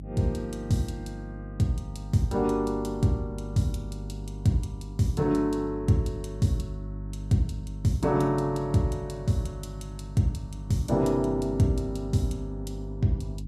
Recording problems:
hum; 50 Hz, harmonics up to 300 Hz, SNR 11 dB

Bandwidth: 14.5 kHz